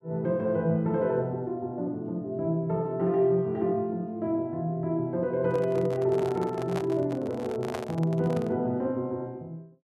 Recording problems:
microphone handling noise; from 5.5 to 8.5 s; peak -2 dB vs average level

